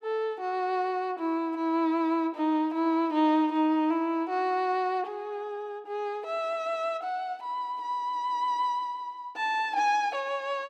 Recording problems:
none

